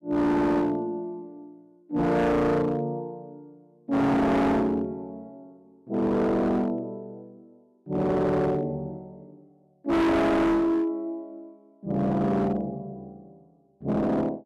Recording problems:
distorted audio; hard clipping, signal-to-distortion ratio 6 dB

